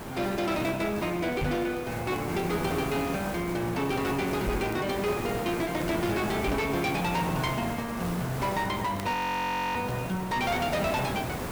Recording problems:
distorted audio; soft clipping, signal-to-distortion ratio 12 dB
background hiss; slope -7 dB per octave, SNR 6 dB
crackling; vinyl, SNR 27 dB
microphone thump; at 1.5 s, at 4.5 s and at 6.5 s; peak +2 dB vs average level
frozen audio; at 9 s for 0.5 s

